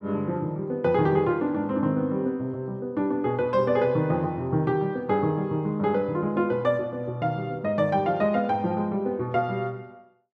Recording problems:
none

